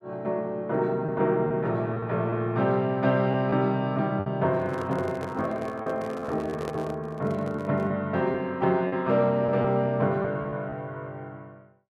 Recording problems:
packet loss; 5% of the sound replaced, filled with repeated pitch periods
microphone handling noise; from 4.5 to 8 s; peak -4 dB vs average level

